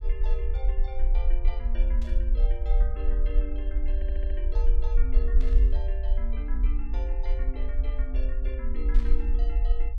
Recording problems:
rumble; below 46 Hz, SNR -13 dB
static burst; at 2 s, at 5.5 s and at 9 s; peak -4 dB vs average level
audio stuttering; at 4 s

